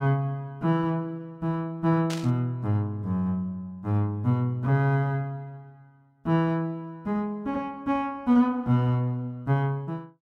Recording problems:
static burst; at 2 s; peak -5 dB vs average level

